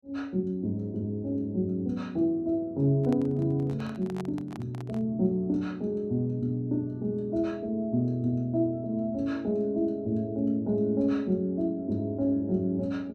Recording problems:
handling noise; from 3 to 5 s; peak -8 dB vs average level

